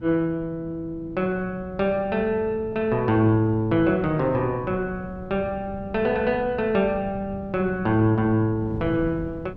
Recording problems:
wind noise; below 200 Hz, SNR 15 dB

